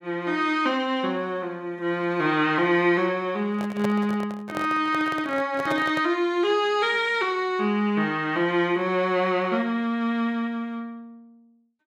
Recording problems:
microphone handling noise; from 3.5 to 6 s; peak -3 dB vs average level

